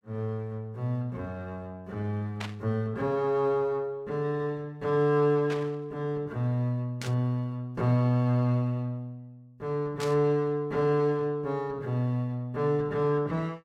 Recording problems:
static burst; 4 times, first at 2.5 s; peak -4 dB vs average level

